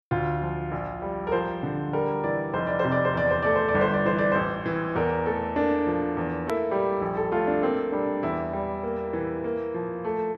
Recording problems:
edit click; at 6.5 s

